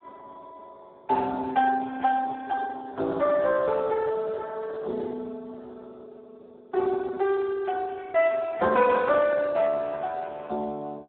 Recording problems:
phone line; 220 Hz to 4 kHz, Speex

